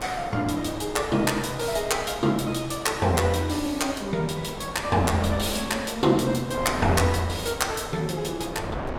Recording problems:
wind on the microphone; below 910 Hz, SNR 10 dB

